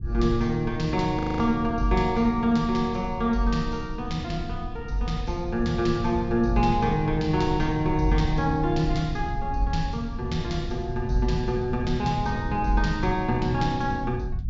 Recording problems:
treble missing; nothing above 7.3 kHz
low-frequency rumble; below 100 Hz, SNR 9 dB
frozen audio; at 1 s

